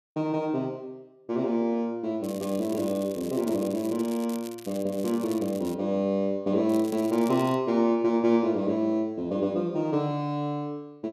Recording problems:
crackle; from 2 to 5.5 s and at 6.5 s; loose cable, SNR 19 dB

